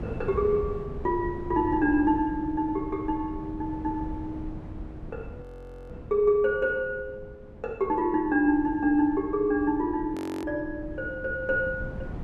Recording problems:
wind noise; below 220 Hz, SNR 14 dB
frozen audio; at 5.5 s and at 10 s

